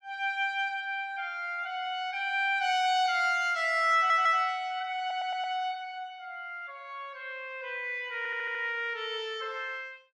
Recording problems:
audio stuttering; at 4 s, at 5 s and at 8 s

